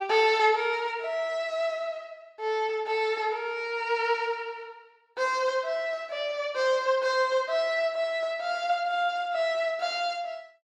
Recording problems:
none

